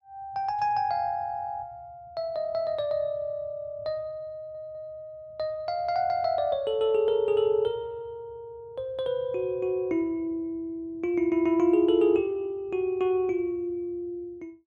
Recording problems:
stutter; at 4.5 s

